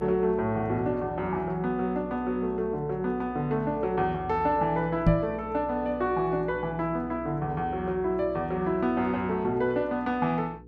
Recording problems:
electrical hum; 60 Hz, harmonics up to 480 Hz, SNR 17 dB
microphone thump; at 5 s; peak +9 dB vs average level

